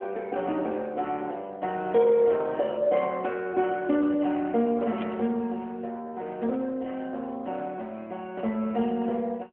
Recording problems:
telephone audio; 220 Hz to 3.3 kHz, AMR-NB
burst of static; at 3 s and at 5 s; peak -11 dB vs average level

